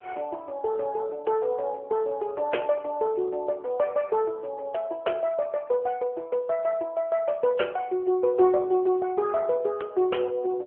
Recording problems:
telephone audio; 320 Hz to 3.2 kHz, AMR-NB

